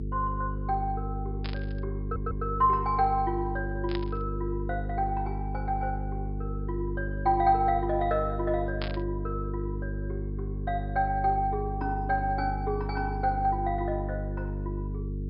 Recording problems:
treble cut off; nothing above 5.5 kHz
hum; 50 Hz, harmonics up to 450 Hz, SNR 4 dB
burst of static; at 1.5 s, at 4 s and at 9 s; peak -3 dB vs average level
audio stuttering; at 2 s

